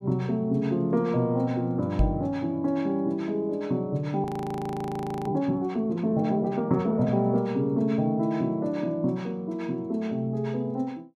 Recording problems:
knock on the microphone; at 2 s; peak +5 dB vs average level
audio freezing; at 4 s for 1 s

